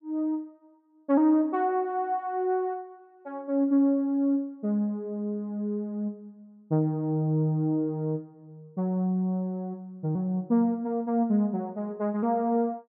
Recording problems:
none

